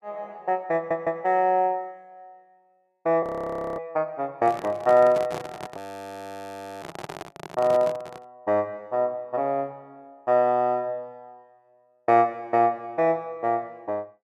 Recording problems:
stutter; at 1 s
audio freezing; at 3 s for 0.5 s and at 6 s for 1 s
microphone handling noise; from 4.5 to 8.5 s; peak -5 dB vs average level

